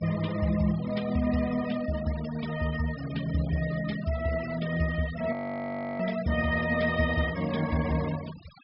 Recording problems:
low-pass filter; nothing above 5.2 kHz
noise reduction artefacts; signal-to-artefact ratio 15 dB
frozen audio; at 5.5 s for 0.5 s

